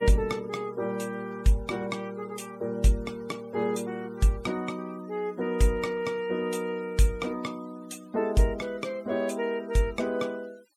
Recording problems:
noise reduction artefacts; signal-to-artefact ratio 24 dB

